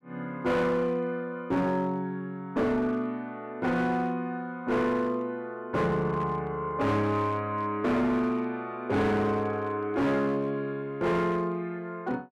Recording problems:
distorted audio; hard clipping, signal-to-distortion ratio 10 dB

